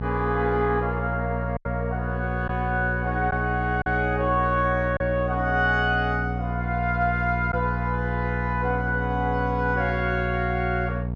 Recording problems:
electrical hum; 60 Hz, harmonics up to 720 Hz, SNR 4 dB
lost packets; 1.6% of the sound replaced, filled with silence

